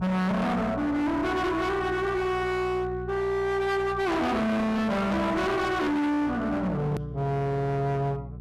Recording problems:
distortion; hard clipping, signal-to-distortion ratio 6 dB
electrical hum; 60 Hz, harmonics up to 900 Hz, SNR 13 dB
hard cut with a click; at 7 s

